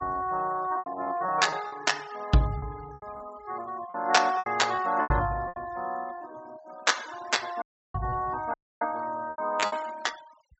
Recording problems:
treble missing; nothing above 7.9 kHz
noise reduction artefacts; signal-to-artefact ratio 19 dB
packet loss; 8% of the sound replaced, filled with repeated pitch periods
audio cutting out; at 7.5 s and at 8.5 s

